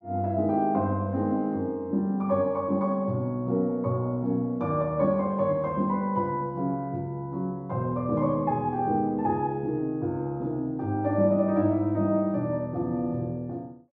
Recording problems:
none

